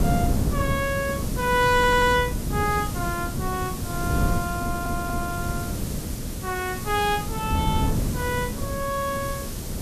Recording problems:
hiss; slope 0 dB per octave, SNR 10 dB
wind noise; below 230 Hz, SNR 3 dB
audio stuttering; at 2 s and at 4.5 s

